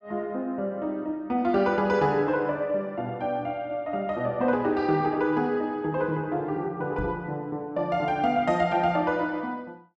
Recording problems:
microphone bump; at 7 s; peak -4 dB vs average level

